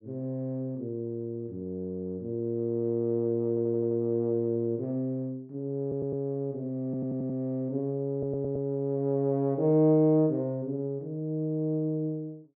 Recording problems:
audio stuttering; 4 times, first at 3.5 s

